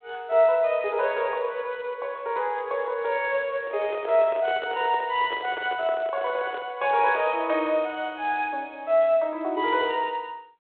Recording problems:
phone line; 320 Hz to 3.7 kHz, G.726
microphone handling noise; from 3.5 to 7.5 s; peak -7 dB vs average level

